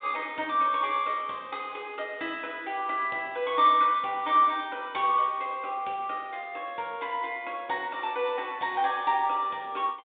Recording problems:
phone line; 260 Hz to 3.7 kHz, G.726

